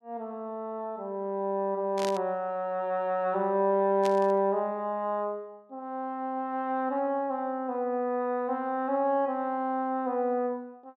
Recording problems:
static burst; at 2 s and at 4 s; peak -4 dB vs average level

